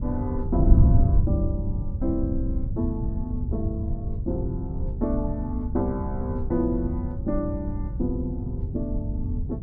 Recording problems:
wind noise; below 110 Hz, SNR -2 dB

